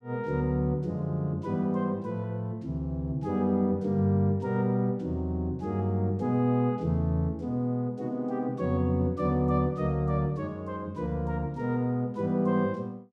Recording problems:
none

